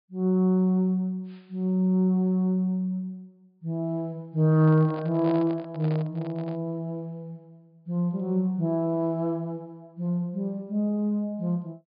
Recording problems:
low-pass filter; nothing above 5 kHz
microphone handling noise; from 4.5 to 6.5 s; peak -7 dB vs average level

